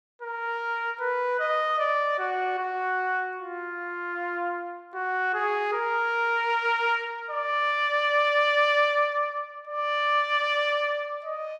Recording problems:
none

